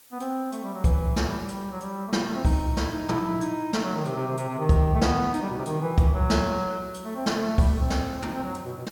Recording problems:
background hiss; slope 0 dB per octave, SNR 27 dB

